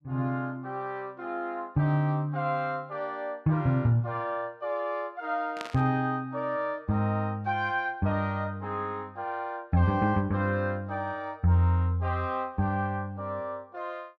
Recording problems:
static burst; at 5.5 s; peak -4 dB vs average level

